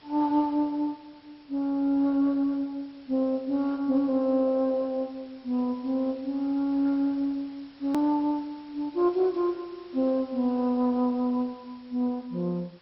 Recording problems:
lossy compression; MP2, log-spectral distance 4 dB, nothing above 18.9 kHz
hiss; slope -2 dB per octave, SNR 28 dB
edit click; at 8 s

